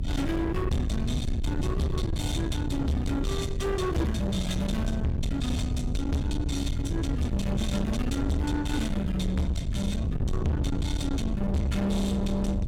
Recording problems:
distorted audio; soft clipping, signal-to-distortion ratio 7 dB
low-frequency rumble; below 90 Hz, SNR 4 dB
wind noise; below 190 Hz, SNR 2 dB

